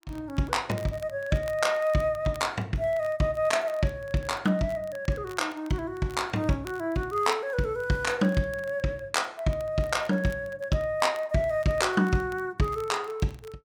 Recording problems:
crackling; vinyl, SNR 25 dB

